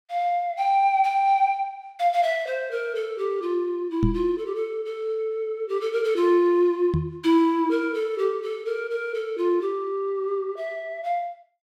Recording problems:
knock on the microphone; at 4 s and at 7 s; peak +5 dB vs average level

